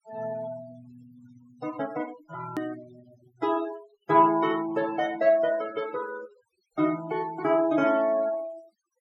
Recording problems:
denoising artefacts; signal-to-artefact ratio 20 dB
click at an edit; at 2.5 s

